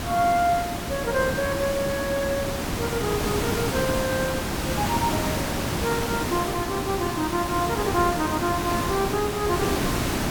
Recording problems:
hiss; slope -4 dB per octave, SNR 1 dB

